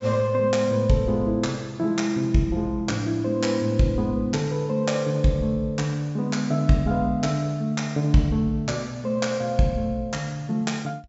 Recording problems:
low-pass filter; nothing above 8 kHz

